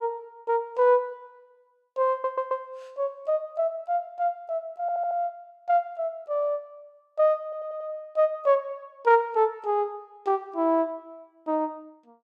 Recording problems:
audio stuttering; at 2 s, at 5 s and at 7.5 s

